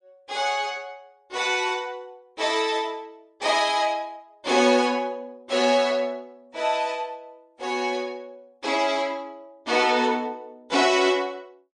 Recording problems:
lossy codec; MP3, log-spectral distance 2 dB, nothing above 10.1 kHz

